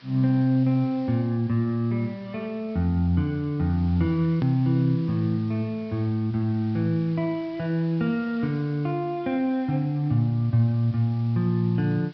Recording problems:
treble cut off; nothing above 5.5 kHz
background hiss; SNR 28 dB
edit click; at 4.5 s

